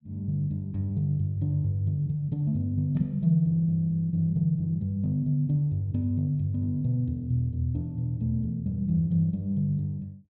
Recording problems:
none

